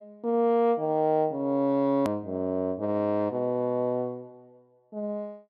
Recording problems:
edit click; at 2 s

